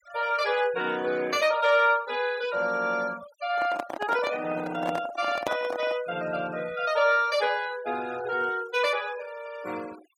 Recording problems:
denoising artefacts; signal-to-artefact ratio 19 dB
microphone handling noise; from 3.5 to 6 s; peak +1 dB vs average level

